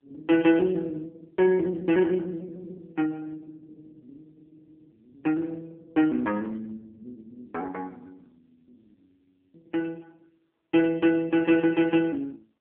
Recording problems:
phone line; 240 Hz to 3.8 kHz, AMR-NB

